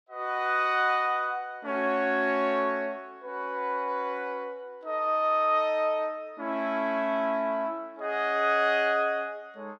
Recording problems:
none

